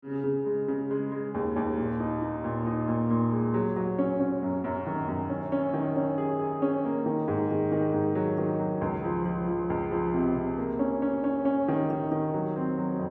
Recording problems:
none

